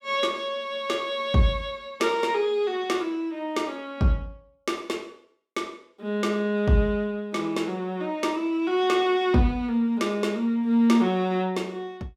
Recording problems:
none

